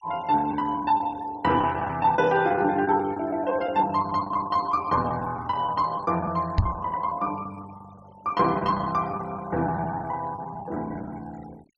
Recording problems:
denoising artefacts; signal-to-artefact ratio 22 dB
lost packets; 13% of the sound replaced, filled with the last packet
microphone thump; at 6.5 s; peak +8 dB vs average level

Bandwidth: 12 kHz